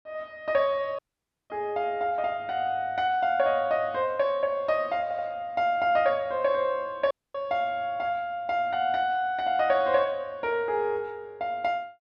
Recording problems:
dropout; at 1 s for 0.5 s and at 7 s
audio stuttering; at 5 s

